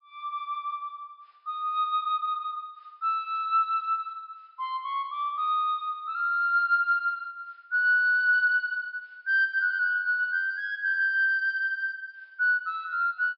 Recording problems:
treble missing; nothing above 5.5 kHz

